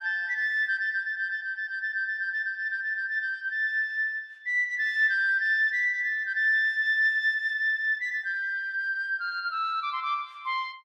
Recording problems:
none

